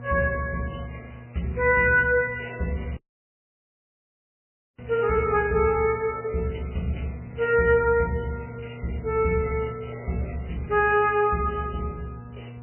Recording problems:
lossy codec; MP3, log-spectral distance 7 dB, nothing above 2.8 kHz
electrical hum; 60 Hz, harmonics up to 960 Hz, SNR 17 dB
audio cutting out; at 3 s for 2 s

